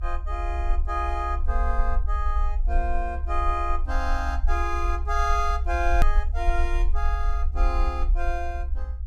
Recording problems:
rumble; below 62 Hz, strongest tone 22 Hz, SNR -2 dB
edit click; at 6 s

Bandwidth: 14.5 kHz